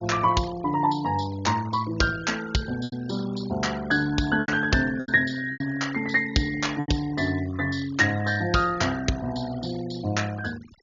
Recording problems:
treble missing; nothing above 7 kHz
noise reduction artefacts; signal-to-artefact ratio 18 dB
lost packets; 4% of the sound replaced, filled with repeated pitch periods

